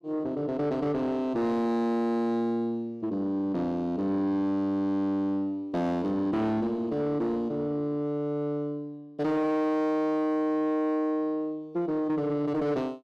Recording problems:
distortion; soft clipping, signal-to-distortion ratio 11 dB

